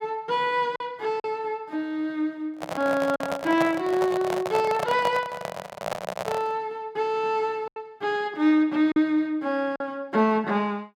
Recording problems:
lost packets; 3% of the sound replaced, filled with silence
microphone handling noise; from 2.5 to 6.5 s; peak +1 dB vs average level

